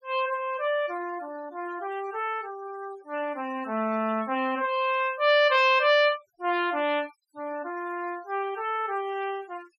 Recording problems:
noise reduction artefacts; signal-to-artefact ratio 22 dB

